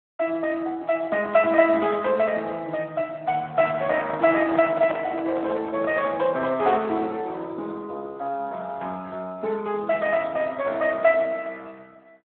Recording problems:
phone line; 260 Hz to 3.1 kHz, Speex
handling noise; from 3.5 to 6 s; peak -2 dB vs average level

